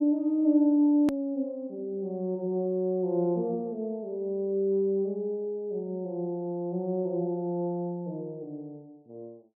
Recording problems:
hard cut with a click; at 1 s

